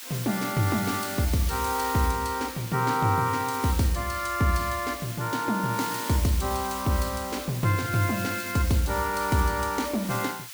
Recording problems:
hiss; SNR 10 dB

